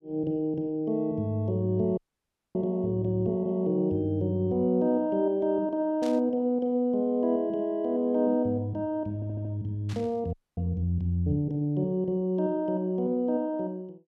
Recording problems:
frozen audio; at 2 s for 0.5 s and at 10 s
static burst; at 6 s and at 10 s; peak -12 dB vs average level
audio stuttering; at 9 s

